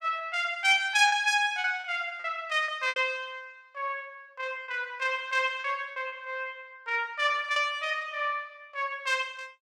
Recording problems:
lost packets; 5% of the sound replaced, filled with repeated pitch periods

